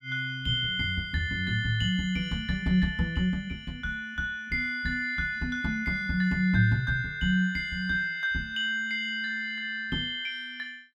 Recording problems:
none

